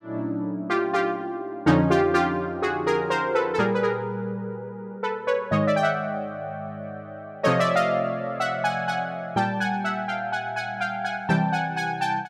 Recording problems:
none

